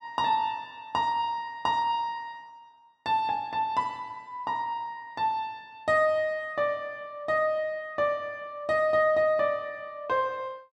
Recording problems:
none

